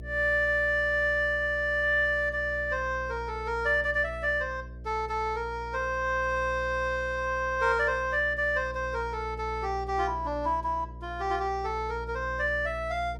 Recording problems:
hum; 60 Hz, harmonics up to 660 Hz, SNR 14 dB

